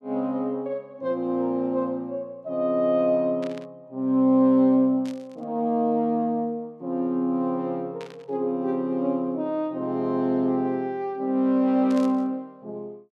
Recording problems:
static burst; 4 times, first at 3.5 s; peak -14 dB vs average level

